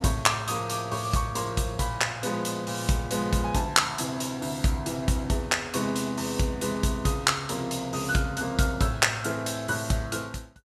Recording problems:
none

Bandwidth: 14.5 kHz